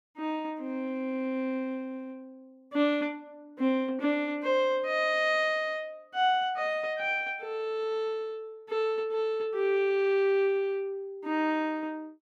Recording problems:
none

